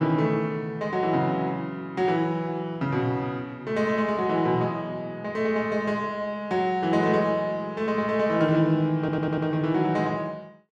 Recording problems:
audio stuttering; at 9 s

